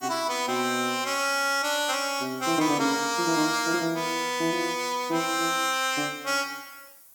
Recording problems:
hiss; SNR 23 dB

